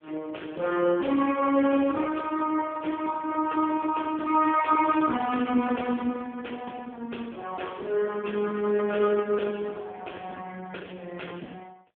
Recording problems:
phone line; 220 Hz to 3.3 kHz, AMR-NB

